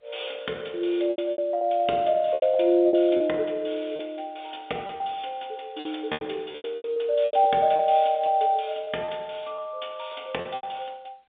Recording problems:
phone line; 300 Hz to 3.7 kHz, G.711
packet loss; 10% of the sound replaced, filled with repeated pitch periods

